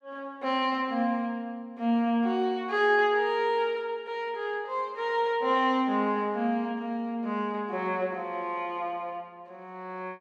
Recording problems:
none

